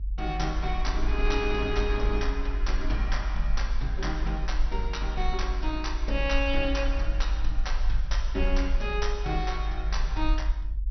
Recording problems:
treble missing; nothing above 5.9 kHz
low-frequency rumble; below 48 Hz, SNR -1 dB

